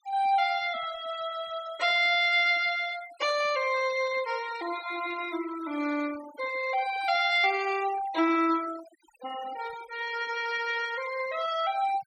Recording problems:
noise reduction artefacts; signal-to-artefact ratio 17 dB

